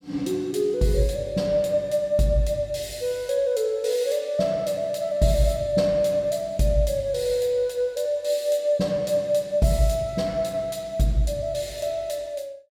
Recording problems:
none

